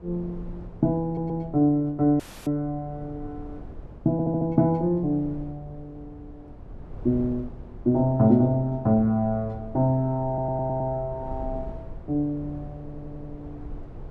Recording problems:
rumble; below 150 Hz, SNR 18 dB
audio stuttering; 4 times, first at 1 s
dropout; at 2 s

